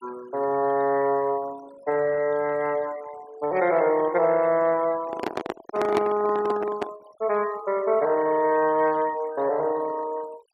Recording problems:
noise reduction artefacts; signal-to-artefact ratio 20 dB
microphone handling noise; from 5 to 7 s; peak +2 dB vs average level

